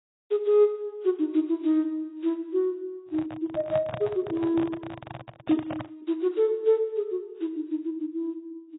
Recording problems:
lossy compression; AAC, log-spectral distance 2 dB, nothing above 3.8 kHz
microphone handling noise; from 3 to 6 s; peak -3 dB vs average level

